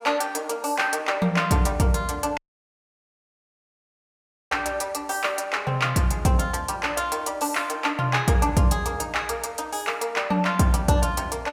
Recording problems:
dropout; at 2.5 s for 2 s

